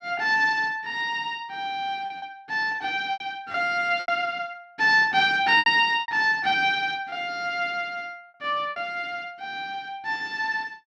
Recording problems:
packet loss; 5% of the sound replaced, filled with repeated pitch periods

